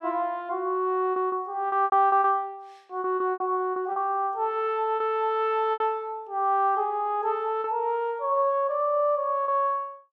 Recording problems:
packet loss; 7% of the sound replaced, filled with repeated pitch periods

